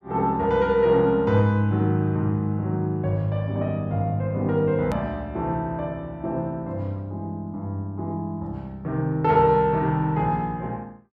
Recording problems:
edit click; at 5 s

